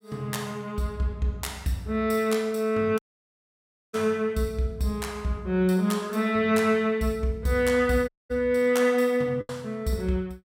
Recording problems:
packet loss; 0.9% of the sound replaced, filled with the last packet
audio cutting out; at 3 s for 1 s and at 8 s

